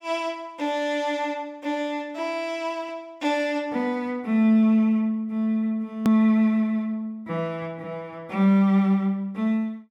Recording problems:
hard cut with a click; at 6 s

